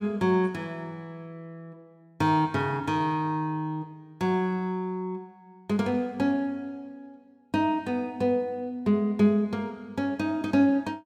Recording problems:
none

